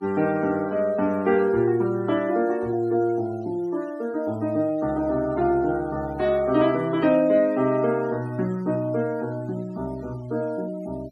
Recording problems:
noise reduction artefacts; signal-to-artefact ratio 24 dB

